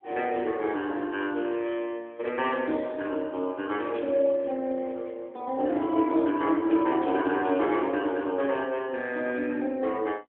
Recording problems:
telephone audio; 240 Hz to 3.5 kHz, AMR-NB
burst of static; at 2.5 s, at 4 s and at 7 s; peak -15 dB vs average level

